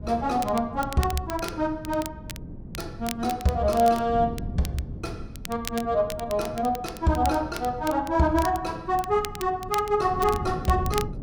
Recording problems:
wind noise; below 200 Hz, SNR 13 dB
crackling; vinyl, SNR 15 dB

